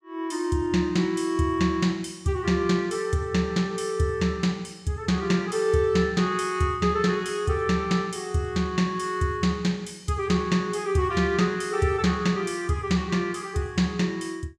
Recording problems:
none

